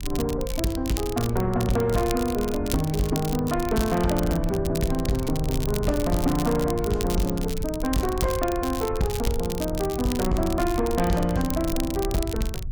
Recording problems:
distorted audio; soft clipping, signal-to-distortion ratio 12 dB
low-frequency rumble; below 86 Hz, SNR 8 dB
crackling; vinyl, SNR 11 dB

